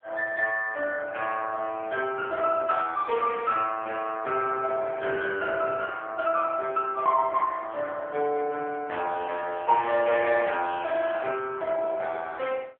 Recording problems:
phone line; 320 Hz to 2.6 kHz, AMR-NB

